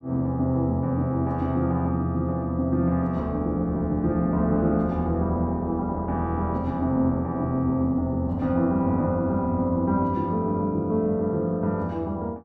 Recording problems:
none

